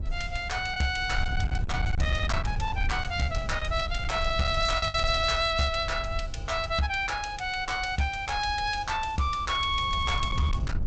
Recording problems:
codec artefacts; G.722, log-spectral distance 2 dB, nothing above 7.8 kHz
distortion; hard clipping, uneven, signal-to-distortion ratio 12 dB
wind on the microphone; below 88 Hz, SNR 7 dB
packet loss; 1.3% of the sound replaced, filled with the last packet

